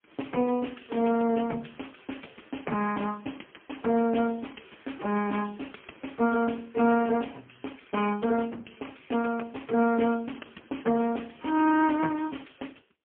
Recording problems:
telephone audio; 190 Hz to 3.3 kHz, AMR-NB, then MP3

